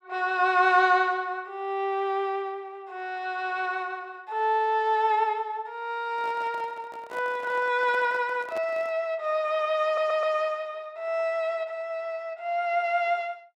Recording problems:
microphone handling noise; from 6 to 9 s; peak -9 dB vs average level
stutter; at 10 s

